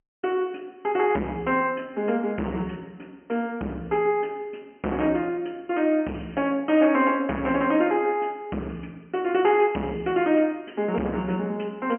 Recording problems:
phone line; 170 Hz to 3.2 kHz, G.711
distortion; hard clipping, signal-to-distortion ratio 11 dB

